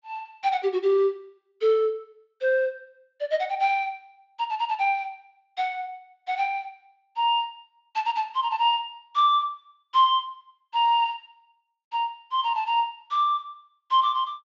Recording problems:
treble cut off; nothing above 7.5 kHz

